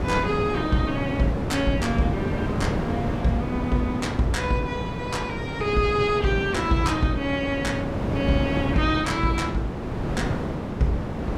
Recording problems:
wind noise; below 490 Hz, SNR 3 dB

